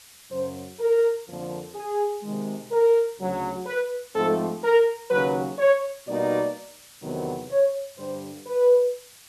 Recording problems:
hiss; slope +2 dB per octave, SNR 23 dB

